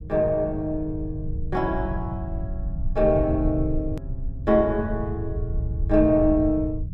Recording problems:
low-frequency rumble; below 90 Hz, SNR 7 dB
hard cut with a click; at 4 s

